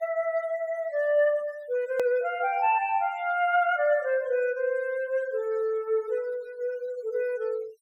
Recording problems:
denoising artefacts; signal-to-artefact ratio 26 dB
edit click; at 2 s

